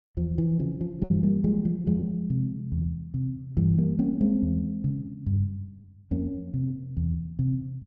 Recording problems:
packet loss; 4% of the sound replaced, filled with repeated pitch periods

